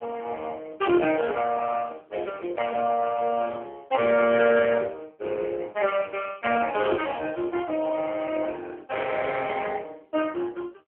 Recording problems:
phone line; 300 Hz to 3.1 kHz, AMR-NB

